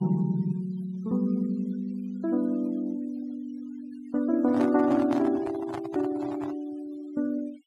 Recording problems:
noise reduction artefacts; signal-to-artefact ratio 22 dB
handling noise; from 4.5 to 6.5 s; peak -2 dB vs average level

